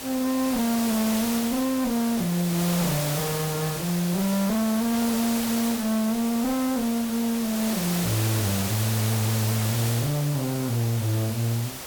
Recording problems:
distortion; hard clipping, uneven, signal-to-distortion ratio 6 dB
background hiss; slope -2 dB per octave, SNR 5 dB

